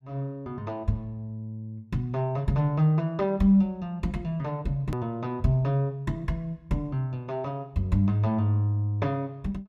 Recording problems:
click at an edit; at 5 s

